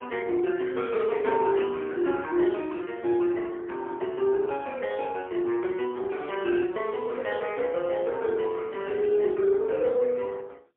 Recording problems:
telephone audio; 280 Hz to 3.3 kHz, AMR-NB, then MP3

